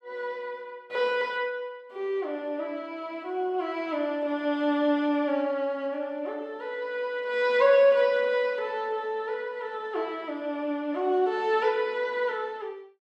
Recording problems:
none

